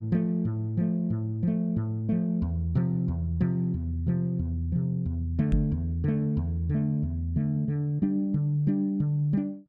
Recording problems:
knock on the microphone; at 5.5 s; peak +4 dB vs average level

